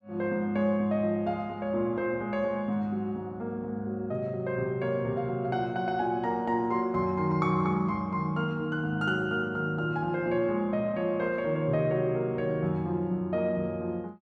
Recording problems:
none

